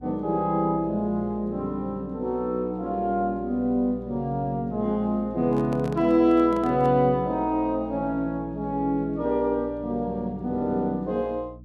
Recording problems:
hum; 60 Hz, harmonics up to 300 Hz, SNR 19 dB
handling noise; from 5.5 to 7 s; peak -8 dB vs average level

